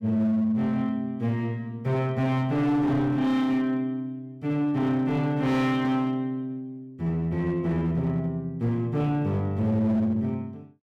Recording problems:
distortion; hard clipping, signal-to-distortion ratio 12 dB

